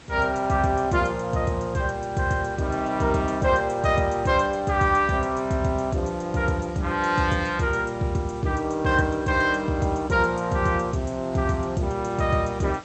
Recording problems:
lossy compression; MP2, log-spectral distance 3 dB, nothing above 8 kHz
background hiss; slope -3 dB per octave, SNR 22 dB

